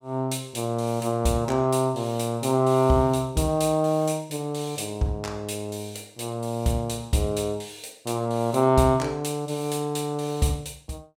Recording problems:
none

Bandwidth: 17.5 kHz